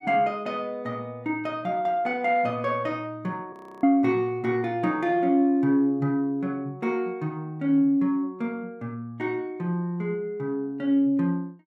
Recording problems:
audio freezing; at 3.5 s

